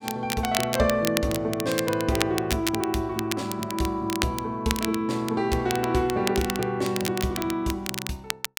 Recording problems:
crackle; vinyl, SNR 6 dB

